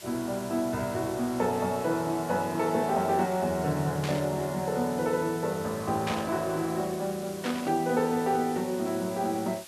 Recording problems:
hiss; slope +1 dB per octave, SNR 16 dB
static burst; at 4 s, at 6 s and at 7.5 s; peak -1 dB vs average level

